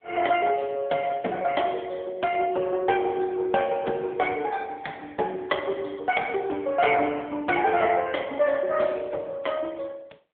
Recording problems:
phone line; 300 Hz to 3.2 kHz, AMR-NB

